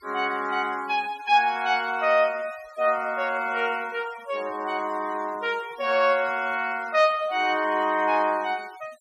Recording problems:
denoising artefacts; signal-to-artefact ratio 23 dB

